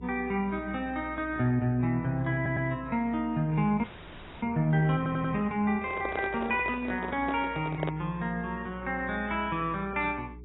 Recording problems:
codec artefacts; AAC, log-spectral distance 3 dB, nothing above 3.3 kHz
mains hum; 60 Hz, harmonics up to 420 Hz, SNR 18 dB
stutter; at 2.5 s and at 5 s
audio freezing; at 4 s for 0.5 s
microphone handling noise; from 6 to 8 s; peak +1 dB vs average level

